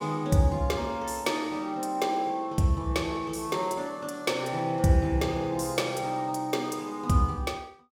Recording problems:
none

